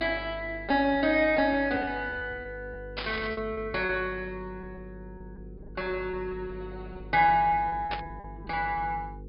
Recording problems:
treble missing; nothing above 5.5 kHz
electrical hum; 50 Hz, harmonics up to 500 Hz, SNR 17 dB
packet loss; 8% of the sound replaced, filled with repeated pitch periods
static burst; at 3 s and at 8 s; peak -2 dB vs average level

